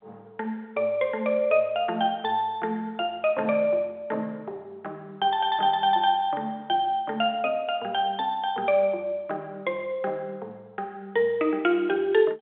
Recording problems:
phone line; 260 Hz to 3.7 kHz, G.711

